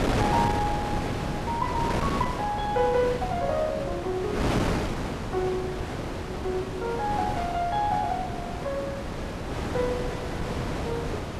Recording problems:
wind on the microphone; below 860 Hz, SNR 1 dB

